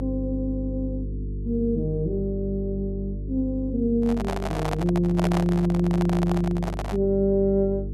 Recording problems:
hum; 50 Hz, harmonics up to 450 Hz, SNR 7 dB
microphone handling noise; from 4 to 7 s; peak +1 dB vs average level

